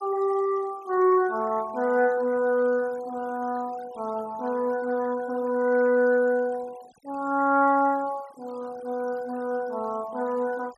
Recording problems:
denoising artefacts; signal-to-artefact ratio 23 dB

